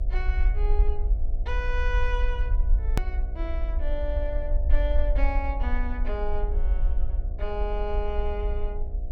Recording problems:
hum; 60 Hz, harmonics up to 720 Hz, SNR 12 dB
rumble; below 50 Hz, SNR -6 dB
hard cut with a click; at 3 s

